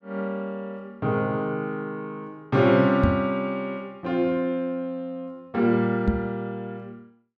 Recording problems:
knock on the microphone; at 3 s and at 6 s; peak +7 dB vs average level

